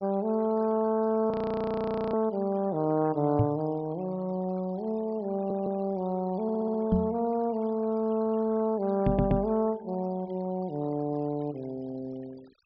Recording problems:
treble missing; nothing above 5.5 kHz
denoising artefacts; signal-to-artefact ratio 25 dB
frozen audio; at 1.5 s for 1 s
microphone thump; at 3.5 s, at 7 s and at 9 s; peak +7 dB vs average level
stutter; at 5.5 s, at 6.5 s and at 9 s

